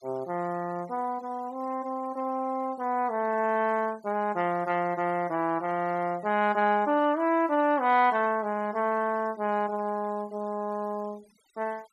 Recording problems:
denoising artefacts; signal-to-artefact ratio 27 dB

